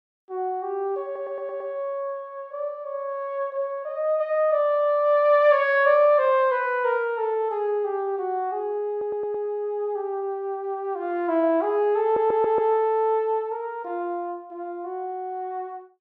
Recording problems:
stutter; at 1 s, at 9 s and at 12 s

